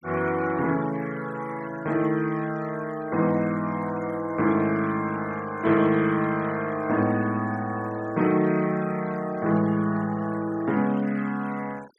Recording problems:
noise reduction artefacts; signal-to-artefact ratio 21 dB

